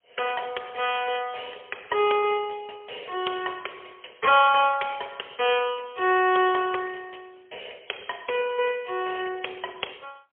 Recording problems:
phone line; 370 Hz to 3.3 kHz, AMR-NB, then MP3

